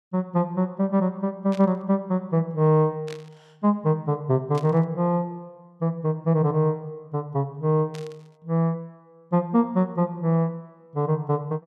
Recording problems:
burst of static; 4 times, first at 1.5 s; peak -12 dB vs average level

